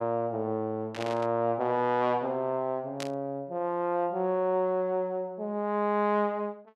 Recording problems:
static burst; at 1 s and at 3 s; peak -4 dB vs average level

